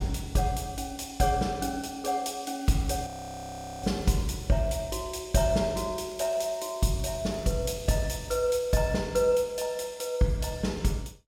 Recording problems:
crackling; from 2.5 to 5 s and from 6 to 9 s; loose cable, SNR 27 dB
audio freezing; at 3 s for 1 s

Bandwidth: 16.5 kHz